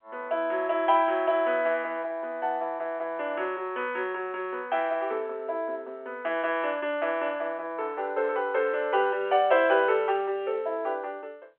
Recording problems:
phone line; 340 Hz to 3.3 kHz, G.711

